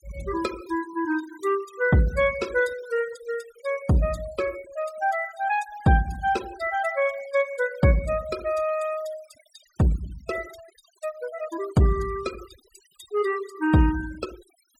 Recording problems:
noise reduction artefacts; signal-to-artefact ratio 18 dB

